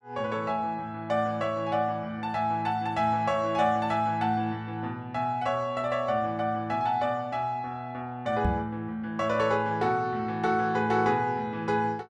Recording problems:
knock on the microphone; at 8.5 s; peak +3 dB vs average level

